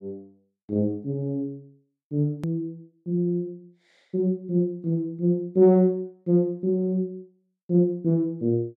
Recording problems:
hard cut with a click; at 2.5 s

